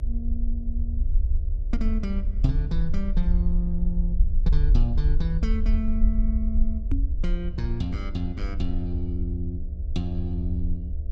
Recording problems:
hum; 60 Hz, harmonics up to 660 Hz, SNR 18 dB
rumble; below 56 Hz, SNR -4 dB
knock on the microphone; at 7 s; peak +7 dB vs average level

